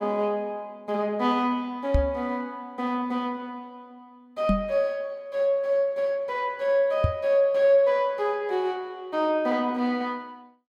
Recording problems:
microphone thump; at 2 s, at 4.5 s and at 7 s; peak +6 dB vs average level

